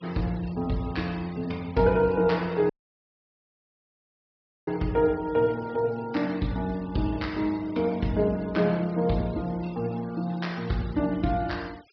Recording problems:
treble cut off; nothing above 5.5 kHz
denoising artefacts; signal-to-artefact ratio 23 dB
dropout; at 2.5 s for 2 s

